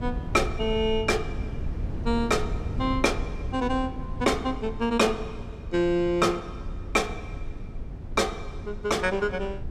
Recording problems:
low-frequency rumble; below 120 Hz, SNR 9 dB

